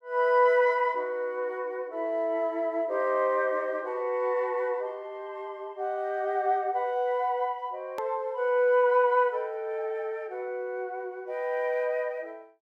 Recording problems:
edit click; at 8 s

